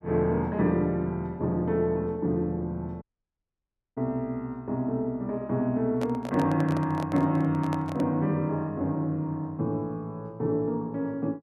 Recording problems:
audio cutting out; at 3 s for 1 s
handling noise; from 6 to 8 s; peak -3 dB vs average level

